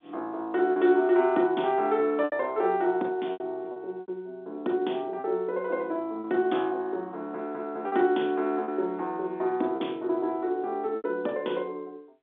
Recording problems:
telephone audio; 220 Hz to 3.8 kHz, G.711
packet loss; 5% of the sound replaced, filled with repeated pitch periods

